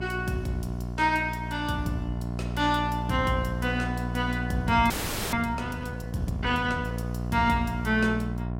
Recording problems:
electrical hum; 60 Hz, harmonics up to 1.1 kHz, SNR 5 dB
frozen audio; at 5 s

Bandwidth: 16 kHz